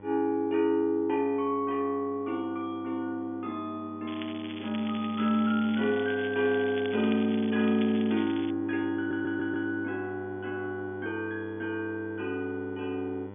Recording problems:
treble missing; nothing above 3.5 kHz
hum; 50 Hz, harmonics up to 2 kHz, SNR 16 dB
crackling; from 4 to 8.5 s; loose cable, SNR 14 dB
stutter; at 9 s

